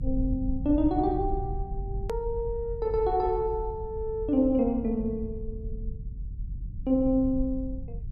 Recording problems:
low-frequency rumble; below 82 Hz, SNR 9 dB
edit click; at 2 s

